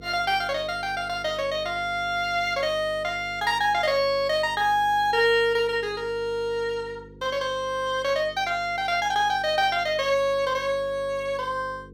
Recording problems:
hum; 50 Hz, harmonics up to 500 Hz, SNR 21 dB

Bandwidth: 17 kHz